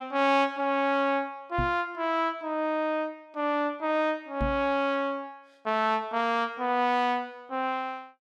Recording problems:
microphone bump; at 1.5 s and at 4.5 s; peak 0 dB vs average level

